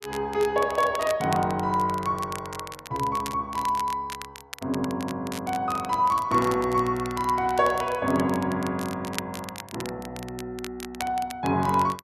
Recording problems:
crackling; vinyl, SNR 14 dB

